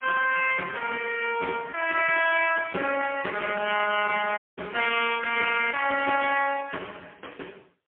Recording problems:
phone line; 390 Hz to 3.1 kHz, AMR-NB, then MP3
audio cutting out; at 4.5 s

